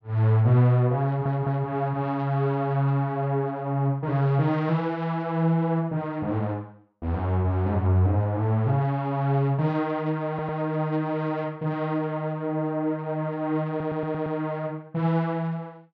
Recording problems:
audio stuttering; at 1 s, at 10 s and at 14 s

